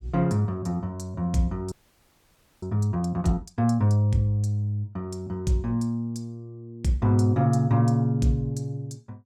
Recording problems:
audio freezing; at 1.5 s for 1 s

